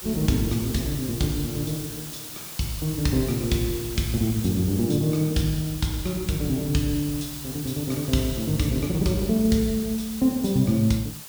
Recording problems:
hiss; slope 0 dB per octave, SNR 10 dB

